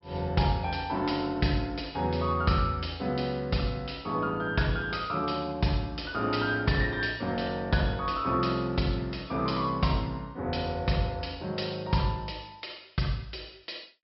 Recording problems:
low-pass filter; nothing above 5.4 kHz

